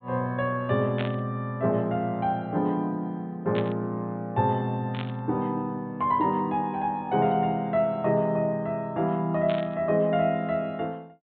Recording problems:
treble missing; nothing above 4 kHz
static burst; 4 times, first at 1 s; peak -3 dB vs average level

